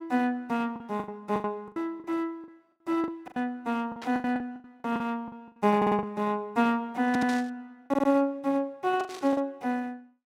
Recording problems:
lost packets; 12% of the sound replaced, filled with the last packet
burst of static; at 4 s, at 7 s and at 9 s; peak -7 dB vs average level
stutter; at 6 s, at 7 s and at 8 s

